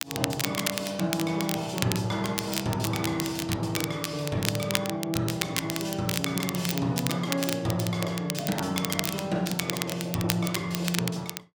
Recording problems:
crackling; vinyl, SNR 4 dB

